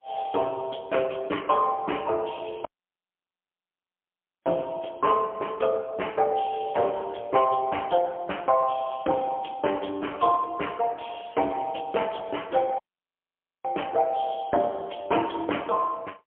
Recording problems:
telephone audio; 240 Hz to 3.1 kHz, AMR-NB, then MP3
audio cutting out; at 2.5 s for 2 s and at 13 s for 1 s

